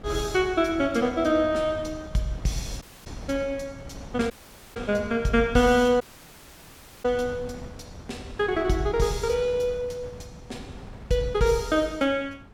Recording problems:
wind noise; below 390 Hz, SNR 17 dB
dropout; at 3 s, at 4.5 s and at 6 s for 1 s

